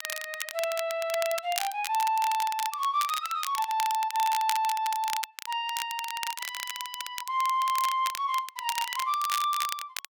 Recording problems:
crackle; vinyl, SNR 7 dB

